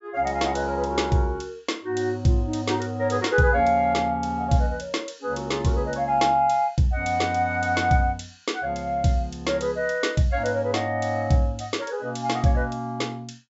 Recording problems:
treble missing; nothing above 8 kHz

